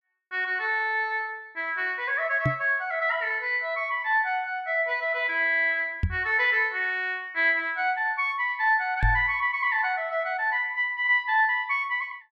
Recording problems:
microphone bump; at 2.5 s, at 6 s and at 9 s; peak +3 dB vs average level

